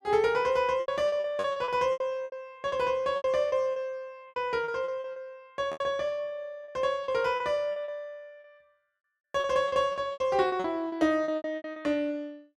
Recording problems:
packet loss; 15% of the sound replaced, filled with repeated pitch periods

